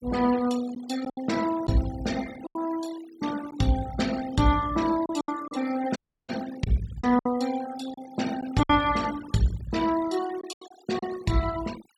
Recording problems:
denoising artefacts; signal-to-artefact ratio 15 dB
lost packets; 6% of the sound replaced, filled with silence
dropout; at 6 s

